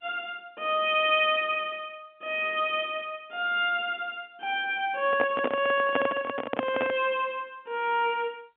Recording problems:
phone line; 170 Hz to 3.4 kHz, G.711
handling noise; from 5 to 7 s; peak +4 dB vs average level

